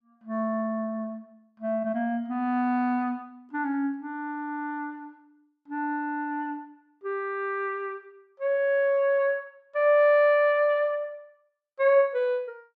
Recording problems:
none

